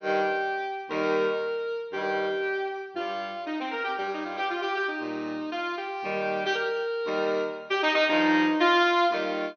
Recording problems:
low-pass filter; nothing above 6.2 kHz

